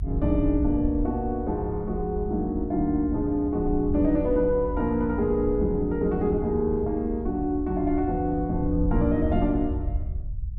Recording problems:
rumble; below 76 Hz, SNR 8 dB

